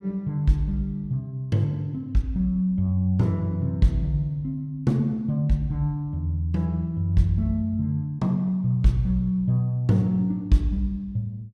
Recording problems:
none

